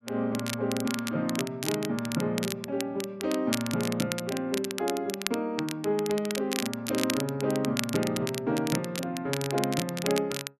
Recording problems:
crackle; vinyl, SNR 6 dB

